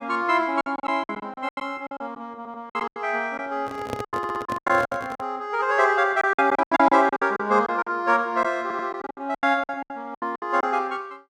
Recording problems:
packet loss; 16% of the sound replaced, filled with silence
stutter; at 2.5 s, at 4 s and at 8.5 s
handling noise; from 3.5 to 5.5 s; peak -2 dB vs average level

